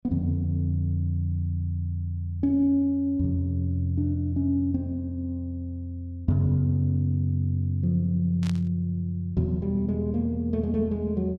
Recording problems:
static burst; at 8.5 s; peak -11 dB vs average level

